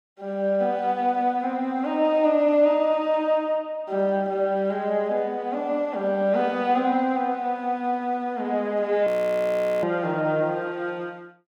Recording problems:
audio freezing; at 9 s for 1 s

